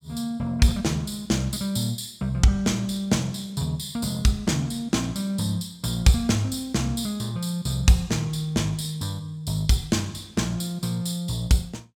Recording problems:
none

